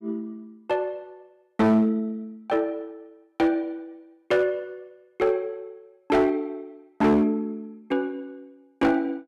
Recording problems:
distorted audio; hard clipping, signal-to-distortion ratio 11 dB

